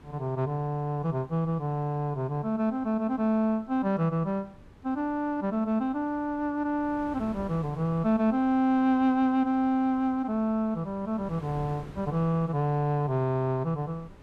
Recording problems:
wind on the microphone; below 420 Hz, SNR 22 dB

